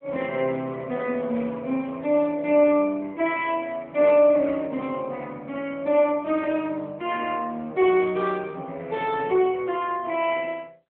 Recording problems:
telephone audio; 240 Hz to 3.5 kHz, AMR-NB

